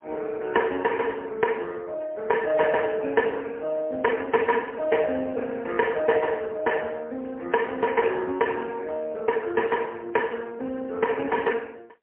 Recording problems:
phone line; 240 Hz to 2.6 kHz, AMR-NB, then MP3

